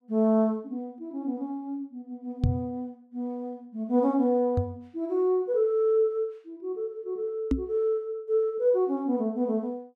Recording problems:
microphone thump; at 2.5 s, at 4.5 s and at 7.5 s; peak +6 dB vs average level

